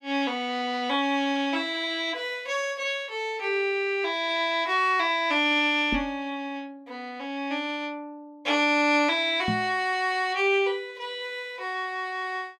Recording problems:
microphone bump; at 6 s and at 9.5 s; peak +1 dB vs average level

